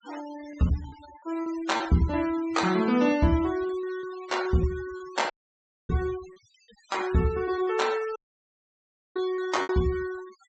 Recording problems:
treble cut off; nothing above 8 kHz
noise reduction artefacts; signal-to-artefact ratio 16 dB
packet loss; 6% of the sound replaced, filled with repeated pitch periods
dropout; at 5.5 s for 0.5 s and at 8 s for 1 s

